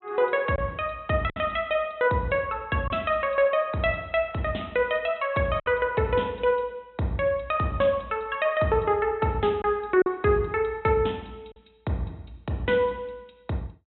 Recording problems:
treble cut off; nothing above 4.1 kHz
lost packets; 1.8% of the sound replaced, filled with silence

